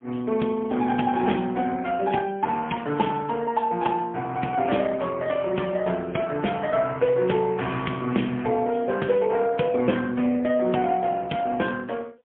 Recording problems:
phone line; 130 Hz to 3.3 kHz, AMR-NB, then MP3

